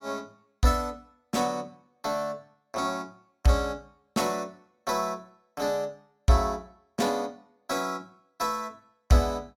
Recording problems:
none

